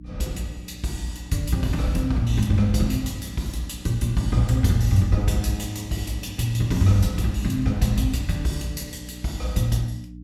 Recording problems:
electrical hum; 60 Hz, harmonics up to 300 Hz, SNR 17 dB

